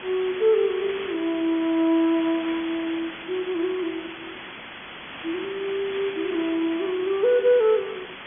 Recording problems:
treble cut off; nothing above 3.4 kHz
background hiss; SNR 12 dB

